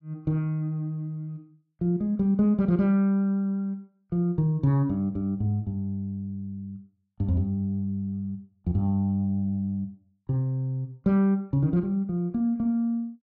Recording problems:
none

